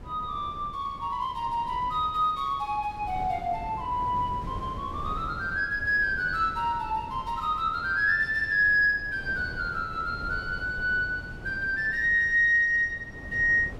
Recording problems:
wind on the microphone; below 340 Hz, SNR 16 dB

